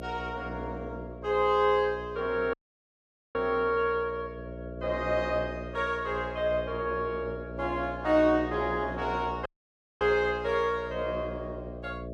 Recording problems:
electrical hum; 60 Hz, harmonics up to 660 Hz, SNR 11 dB
audio cutting out; at 2.5 s for 1 s and at 9.5 s for 0.5 s

